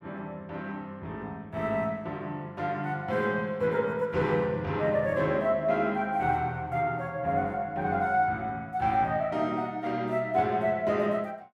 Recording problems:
none

